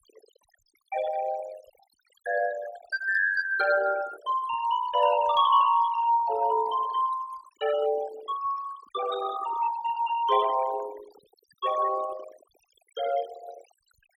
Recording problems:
denoising artefacts; signal-to-artefact ratio 14 dB

